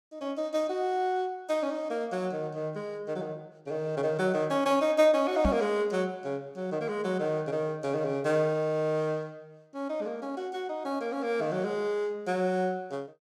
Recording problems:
knock on the microphone; at 5.5 s; peak +5 dB vs average level

